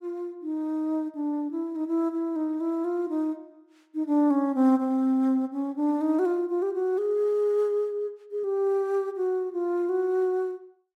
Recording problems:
none

